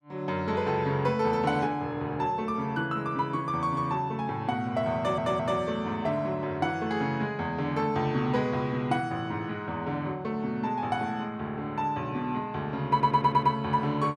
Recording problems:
audio stuttering; at 5 s and at 13 s

